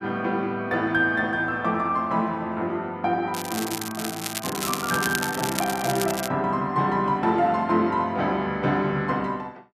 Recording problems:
crackling; from 3.5 to 6.5 s; loose cable, SNR 6 dB

